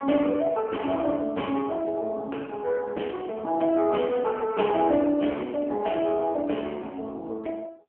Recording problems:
phone line; 220 Hz to 3.2 kHz, AMR-NB

